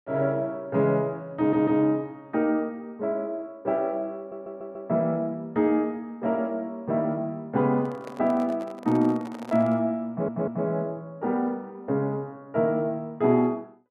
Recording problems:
audio stuttering; at 1.5 s, at 4 s and at 10 s
microphone handling noise; from 8 to 10 s; peak -11 dB vs average level

